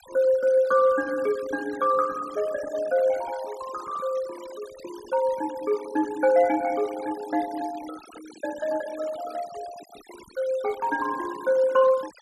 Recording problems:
denoising artefacts; signal-to-artefact ratio 19 dB

